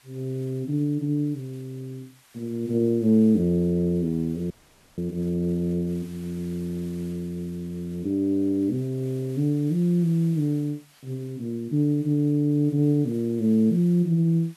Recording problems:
hiss; slope 0 dB per octave, SNR 28 dB
audio freezing; at 4.5 s

